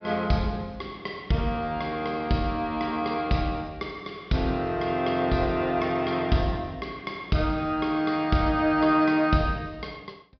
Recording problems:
treble cut off; nothing above 5.5 kHz

